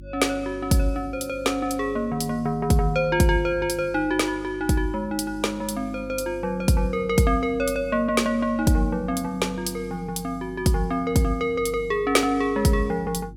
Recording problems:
electrical hum; 50 Hz, harmonics up to 350 Hz, SNR 19 dB

